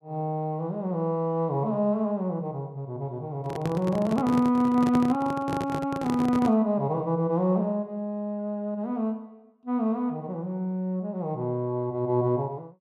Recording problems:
microphone handling noise; from 3.5 to 6.5 s; peak 0 dB vs average level

